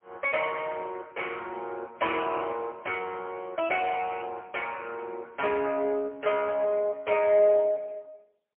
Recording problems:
telephone audio; 260 Hz to 3.2 kHz, AMR-NB, then MP3

